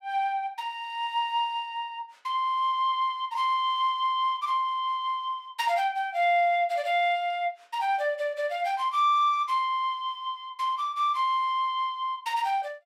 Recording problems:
none

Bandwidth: 16.5 kHz